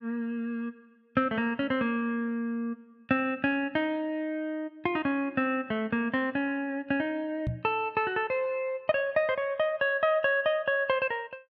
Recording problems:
knock on the microphone; at 7.5 s; peak 0 dB vs average level

